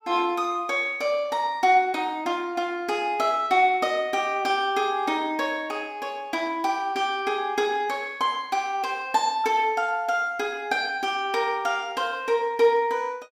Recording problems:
none

